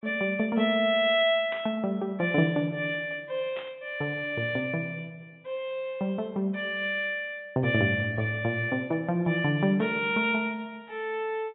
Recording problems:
treble missing; nothing above 3.5 kHz
static burst; at 1.5 s and at 3.5 s; peak -8 dB vs average level

